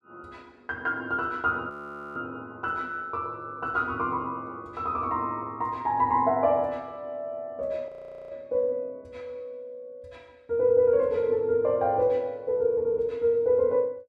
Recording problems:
audio freezing; at 1.5 s and at 8 s

